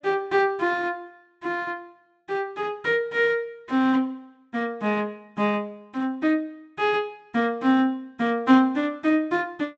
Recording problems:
low-pass filter; nothing above 8 kHz

